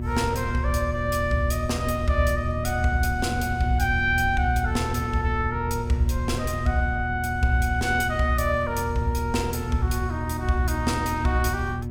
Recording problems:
hum; 60 Hz, harmonics up to 960 Hz, SNR 8 dB
low-frequency rumble; below 82 Hz, strongest tone 78 Hz, SNR 7 dB

